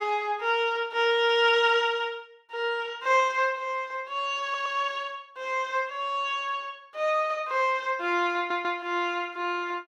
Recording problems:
stutter; at 4.5 s and at 8.5 s

